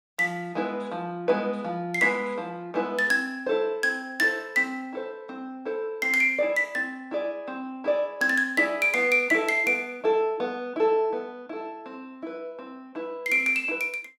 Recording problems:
none

